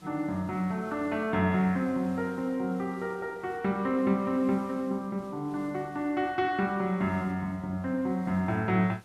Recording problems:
hiss; slope -3 dB per octave, SNR 27 dB

